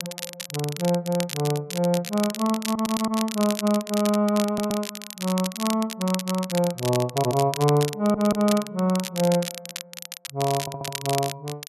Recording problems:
crackle; vinyl, SNR 9 dB
audio stuttering; 4 times, first at 2.5 s

